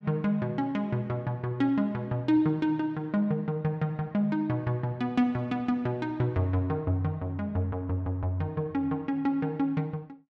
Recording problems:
none

